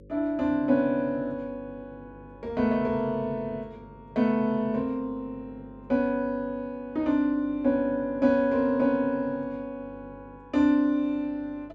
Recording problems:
electrical hum; 50 Hz, harmonics up to 550 Hz, SNR 24 dB

